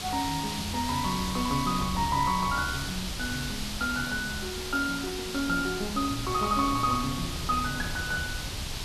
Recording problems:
hiss; slope +1 dB per octave, SNR 5 dB
wind noise; below 150 Hz, SNR 12 dB
crackle; vinyl, SNR 30 dB

